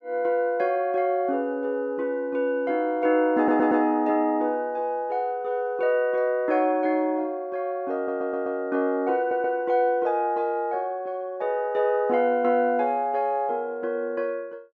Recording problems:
audio stuttering; at 3.5 s, at 8 s and at 9 s

